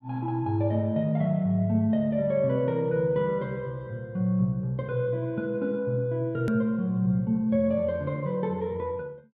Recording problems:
edit click; at 6.5 s

